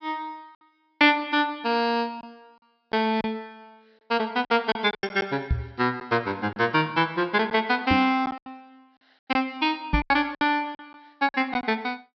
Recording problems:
treble cut off; nothing above 5.5 kHz
lost packets; 7% of the sound replaced, filled with silence
microphone thump; at 5.5 s, at 8 s and at 10 s; peak +4 dB vs average level

